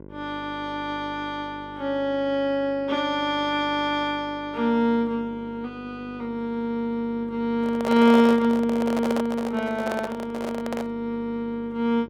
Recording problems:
hum; 50 Hz, harmonics up to 1.1 kHz, SNR 19 dB
microphone handling noise; from 7.5 to 11 s; peak 0 dB vs average level

